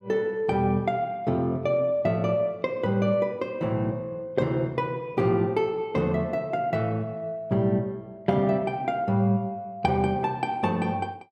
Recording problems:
none

